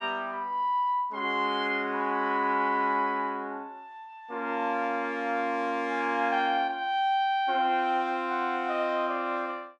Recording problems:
none

